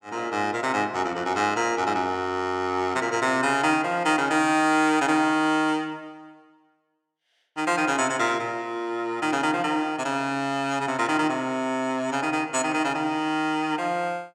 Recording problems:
none

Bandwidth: 17 kHz